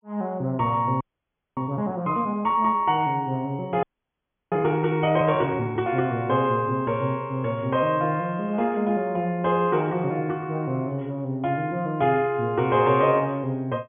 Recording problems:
treble cut off; nothing above 3.4 kHz
frozen audio; at 1 s for 0.5 s and at 4 s for 0.5 s

